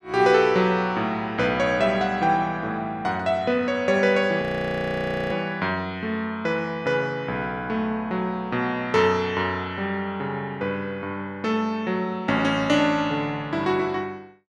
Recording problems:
frozen audio; at 4.5 s for 1 s

